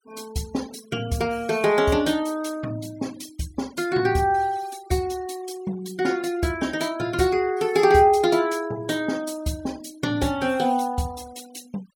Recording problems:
denoising artefacts; signal-to-artefact ratio 22 dB

